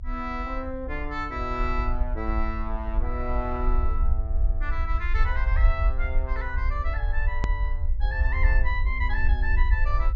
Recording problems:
low-pass filter; nothing above 8 kHz
low-frequency rumble; below 58 Hz, SNR -4 dB
edit click; at 7.5 s

